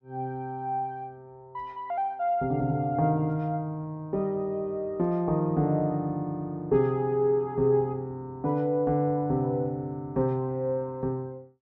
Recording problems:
none

